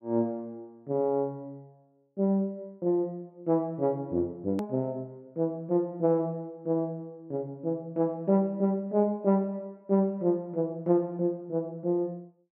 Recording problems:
click at an edit; at 4.5 s

